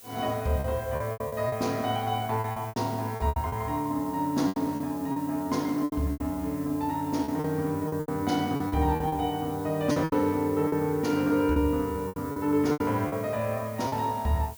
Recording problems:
background hiss; slope 0 dB per octave, SNR 18 dB
packet loss; 12% of the sound replaced, filled with repeated pitch periods

